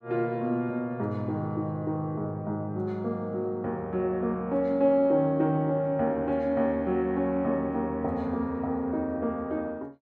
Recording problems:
none

